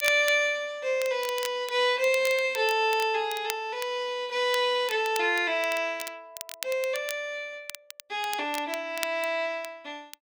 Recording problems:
crackling; vinyl, SNR 14 dB

